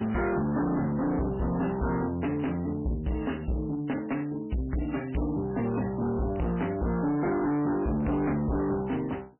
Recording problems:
lossy compression; MP3, log-spectral distance 5 dB, nothing above 3 kHz
distorted audio; soft clipping, signal-to-distortion ratio 6 dB

